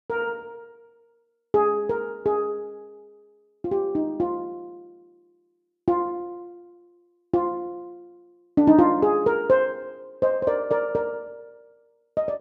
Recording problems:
none

